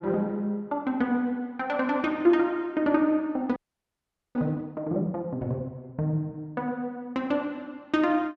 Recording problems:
audio freezing; at 3.5 s for 1 s

